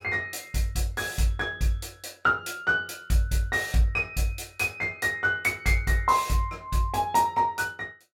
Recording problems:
none

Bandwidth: 17 kHz